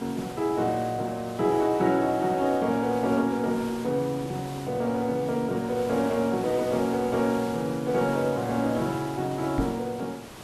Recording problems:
hiss; slope -5 dB per octave, SNR 15 dB
microphone thump; at 9.5 s; peak +3 dB vs average level

